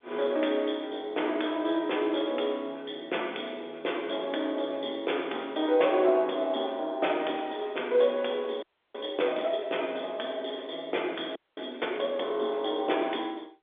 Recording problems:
phone line; 300 Hz to 3.6 kHz, G.711
frozen audio; at 8.5 s and at 11 s

